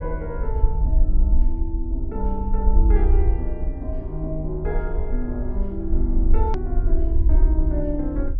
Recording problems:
low-pass filter; nothing above 6.6 kHz
rumble; below 54 Hz, SNR -6 dB
edit click; at 6.5 s

